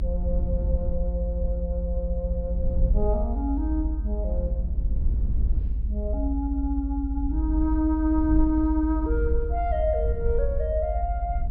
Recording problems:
low-pass filter; nothing above 5.5 kHz
rumble; below 66 Hz, strongest tone 50 Hz, SNR -1 dB

